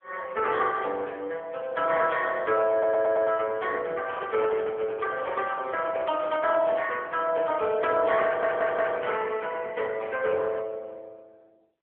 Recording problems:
telephone audio; 300 Hz to 2.7 kHz, AMR-NB
stutter; at 2.5 s and at 8.5 s
handling noise; from 4 to 6.5 s; peak -6 dB vs average level

